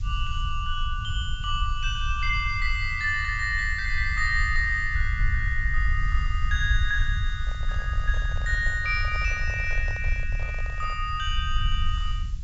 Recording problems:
treble missing; nothing above 8 kHz
hiss; slope +3 dB per octave, SNR 27 dB
low-frequency rumble; below 66 Hz, SNR 2 dB
microphone handling noise; from 7.5 to 11 s; peak -12 dB vs average level

